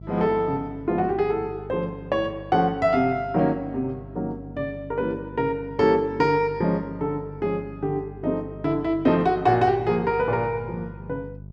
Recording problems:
hum; 50 Hz, harmonics up to 450 Hz, SNR 17 dB

